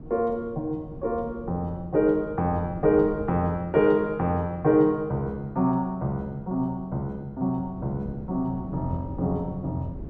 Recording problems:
wind on the microphone; below 250 Hz, SNR 16 dB

